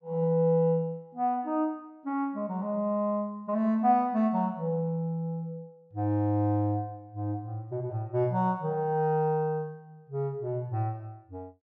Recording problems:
none

